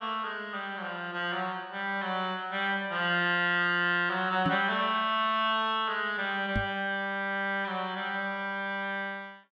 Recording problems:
knock on the microphone; at 4.5 s and at 6.5 s; peak +2 dB vs average level

